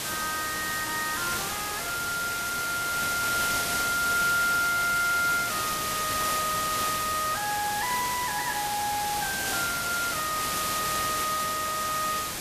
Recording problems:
hiss; slope -1 dB per octave, SNR 1 dB

